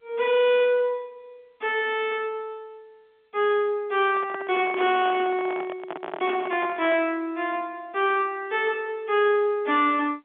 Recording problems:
phone line; 190 Hz to 3.5 kHz, G.711
distorted audio; soft clipping, signal-to-distortion ratio 9 dB
handling noise; from 4 to 7 s; peak -5 dB vs average level

